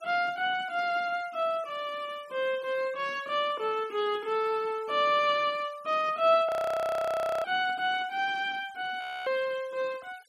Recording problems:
denoising artefacts; signal-to-artefact ratio 26 dB
audio freezing; at 6.5 s for 1 s and at 9 s

